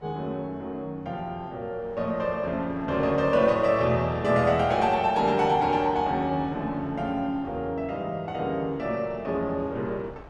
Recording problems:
wind noise; below 830 Hz, SNR 22 dB

